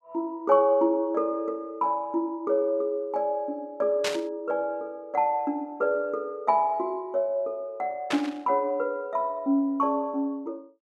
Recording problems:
static burst; at 4 s and at 8 s; peak +2 dB vs average level

